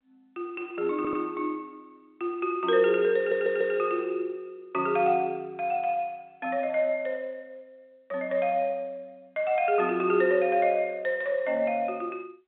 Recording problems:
phone line; 240 Hz to 3.7 kHz, G.711
stutter; at 1 s and at 3 s

